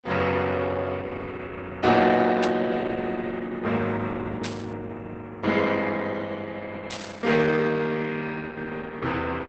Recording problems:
codec artefacts; Opus, log-spectral distance 4 dB, nothing above 7.1 kHz
burst of static; at 2.5 s, at 4.5 s and at 7 s; peak -2 dB vs average level

